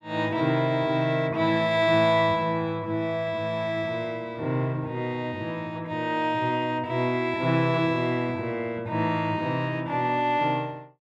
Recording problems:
none

